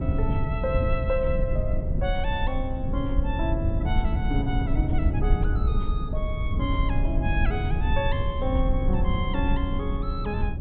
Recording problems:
low-pass filter; nothing above 4 kHz
low-frequency rumble; below 94 Hz, SNR -4 dB

